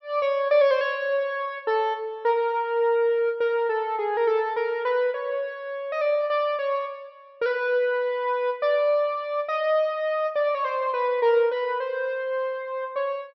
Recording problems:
low-pass filter; nothing above 5.8 kHz

